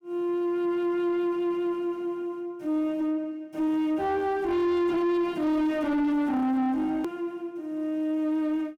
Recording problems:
distorted audio; soft clipping, signal-to-distortion ratio 7 dB
click at an edit; at 7 s

